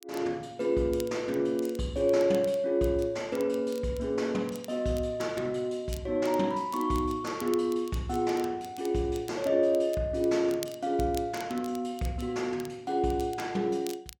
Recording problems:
crackle; vinyl, SNR 20 dB

